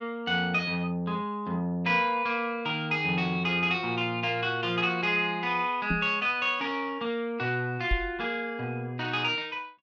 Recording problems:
microphone thump; at 6 s and at 8 s; peak +1 dB vs average level

